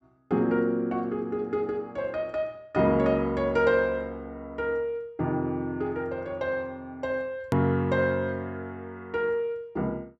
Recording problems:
hard cut with a click; at 7.5 s

